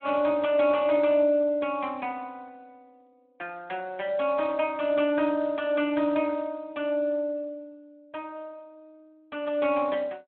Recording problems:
phone line; 260 Hz to 3.4 kHz, Speex

